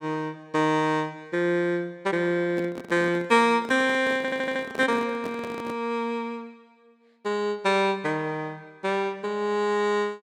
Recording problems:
handling noise; from 2.5 to 6 s; peak -6 dB vs average level
stutter; at 4 s

